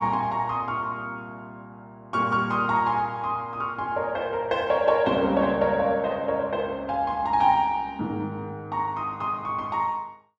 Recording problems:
none

